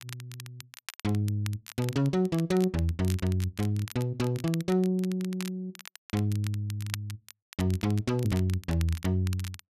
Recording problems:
crackle; vinyl, SNR 16 dB

